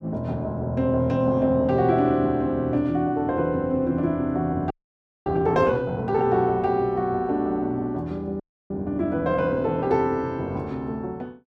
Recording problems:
audio freezing; at 4.5 s for 0.5 s and at 8.5 s

